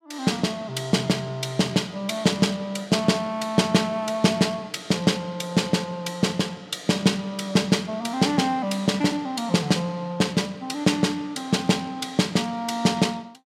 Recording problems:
none

